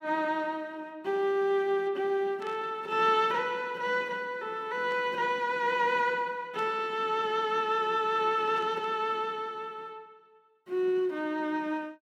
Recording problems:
burst of static; 4 times, first at 2.5 s; peak -14 dB vs average level

